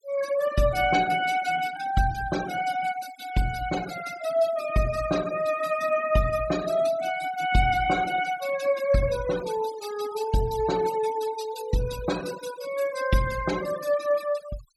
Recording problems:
noise reduction artefacts; signal-to-artefact ratio 13 dB

